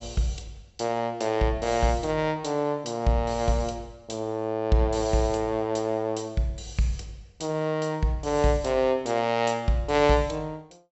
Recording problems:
treble missing; nothing above 7.9 kHz

